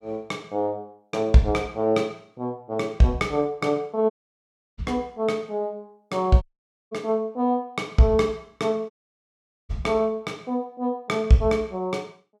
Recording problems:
audio cutting out; at 4 s for 0.5 s, at 6.5 s and at 9 s for 1 s

